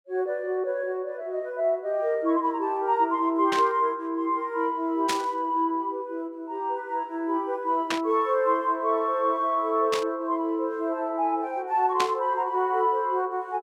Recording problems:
static burst; 5 times, first at 3.5 s; peak +2 dB vs average level

